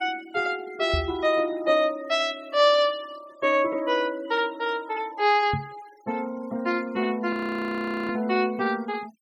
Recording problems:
noise reduction artefacts; signal-to-artefact ratio 22 dB
microphone thump; at 1 s and at 5.5 s; peak 0 dB vs average level
frozen audio; at 7.5 s for 1 s

